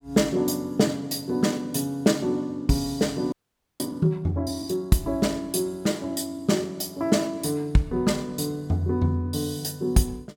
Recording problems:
frozen audio; at 3.5 s

